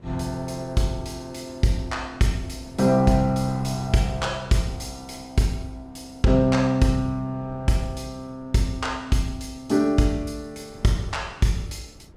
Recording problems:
wind noise; below 310 Hz, SNR 22 dB

